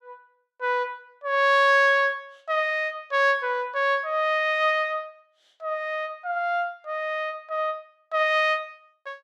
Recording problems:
none

